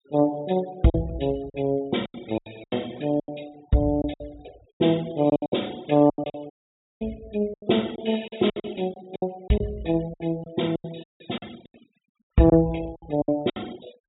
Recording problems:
treble cut off; nothing above 4 kHz
denoising artefacts; signal-to-artefact ratio 24 dB
packet loss; 14% of the sound replaced, filled with silence
dropout; at 6.5 s for 0.5 s and at 11 s

